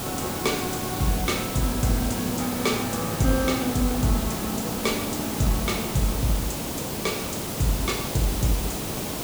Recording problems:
hiss; SNR 2 dB

